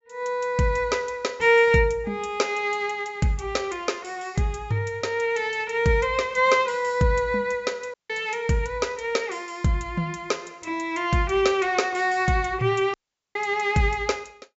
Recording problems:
treble missing; nothing above 8 kHz
audio cutting out; at 8 s and at 13 s

